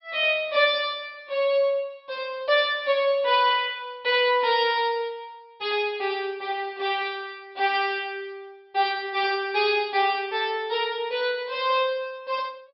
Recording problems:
treble cut off; nothing above 5.4 kHz

